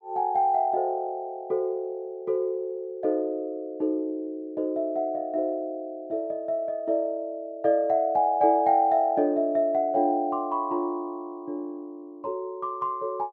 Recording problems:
none

